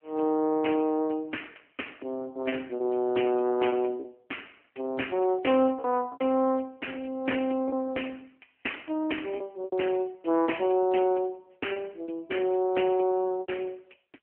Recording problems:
telephone audio; 220 Hz to 3.1 kHz, AMR-NB
packet loss; 5% of the sound replaced, filled with repeated pitch periods

